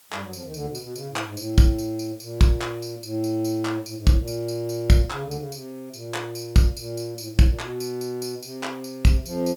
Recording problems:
background hiss; slope +1 dB per octave, SNR 27 dB

